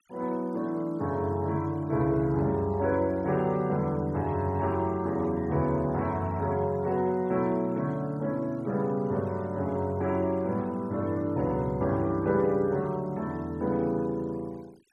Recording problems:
denoising artefacts; signal-to-artefact ratio 28 dB

